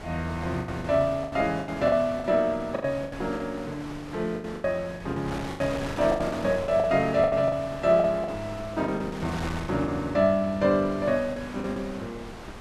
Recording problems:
wind noise; below 1.6 kHz, SNR 13 dB
packet loss; 13% of the sound replaced, filled with the last packet

